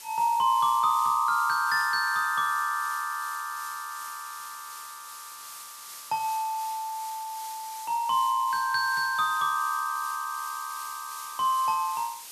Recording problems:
background hiss; slope +3 dB per octave, SNR 14 dB

